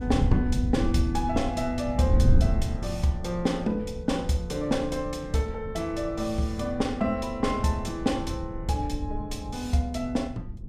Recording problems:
wind noise; below 110 Hz, SNR 4 dB

